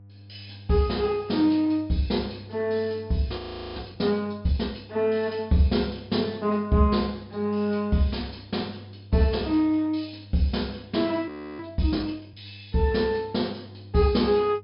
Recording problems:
treble cut off; nothing above 5.5 kHz
electrical hum; 50 Hz, harmonics up to 500 Hz, SNR 20 dB
frozen audio; at 3.5 s and at 11 s

